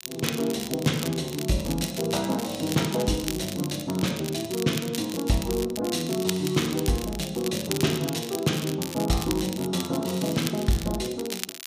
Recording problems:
crackle; vinyl, SNR 9 dB

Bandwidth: 15 kHz